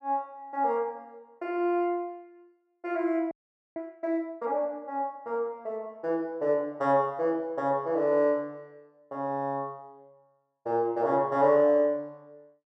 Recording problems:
audio freezing; at 3.5 s

